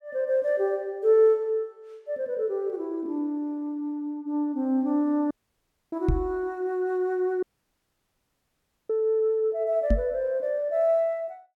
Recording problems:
dropout; at 5.5 s for 0.5 s and at 7.5 s for 1.5 s
microphone bump; at 6 s and at 10 s; peak +5 dB vs average level

